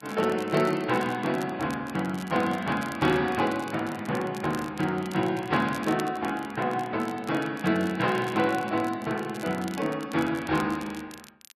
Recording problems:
lossy compression; Vorbis, log-spectral distance 2 dB
crackling; vinyl, SNR 20 dB

